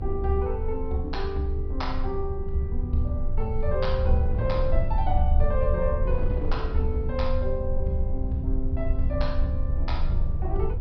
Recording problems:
treble missing; nothing above 5.5 kHz
low-frequency rumble; below 70 Hz, strongest tone 20 Hz, SNR -1 dB
wind on the microphone; below 510 Hz, SNR 15 dB

